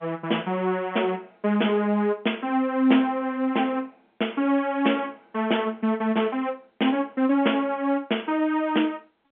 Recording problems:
telephone audio; 220 Hz to 3.4 kHz, G.711

